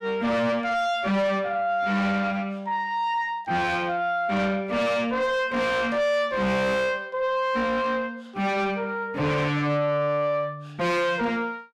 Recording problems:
distortion; soft clipping, signal-to-distortion ratio 7 dB

